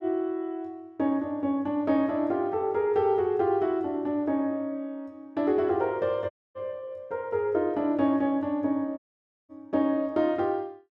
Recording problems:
dropout; at 6.5 s and at 9 s for 0.5 s

